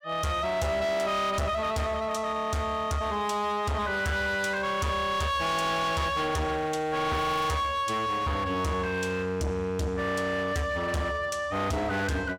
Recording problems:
distortion; hard clipping, uneven, signal-to-distortion ratio 8 dB
crackling; at 7 s; loose cable, SNR 25 dB

